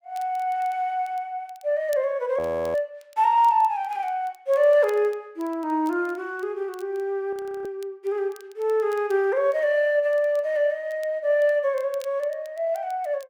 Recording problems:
crackle; vinyl, SNR 29 dB
frozen audio; at 2.5 s and at 7.5 s

